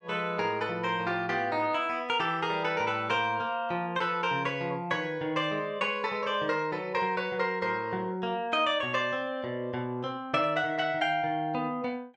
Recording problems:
none

